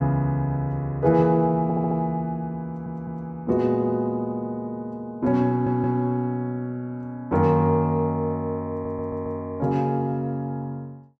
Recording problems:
audio stuttering; 4 times, first at 1.5 s

